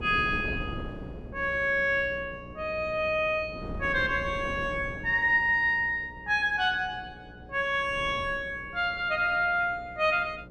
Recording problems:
hum; 60 Hz, harmonics up to 600 Hz, SNR 21 dB
wind on the microphone; below 350 Hz, SNR 16 dB

